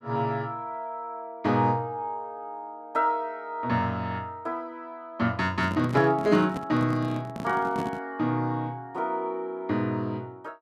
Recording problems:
microphone handling noise; from 5.5 to 8 s; peak -1 dB vs average level

